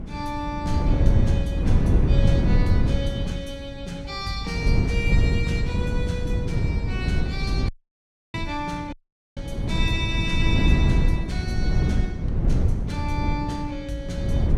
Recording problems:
wind on the microphone; below 140 Hz, SNR -7 dB
dropout; at 7.5 s for 0.5 s and at 9 s

